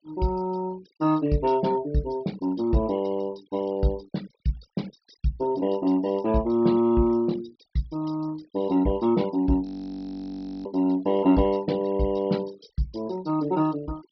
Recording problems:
treble cut off; nothing above 5.5 kHz
denoising artefacts; signal-to-artefact ratio 23 dB
audio freezing; at 9.5 s for 1 s

